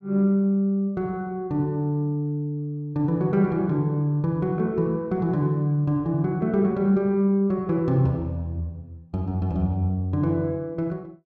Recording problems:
none

